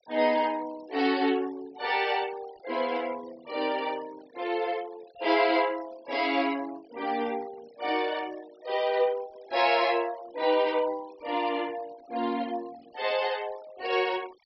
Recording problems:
low-pass filter; nothing above 5.7 kHz
noise reduction artefacts; signal-to-artefact ratio 21 dB

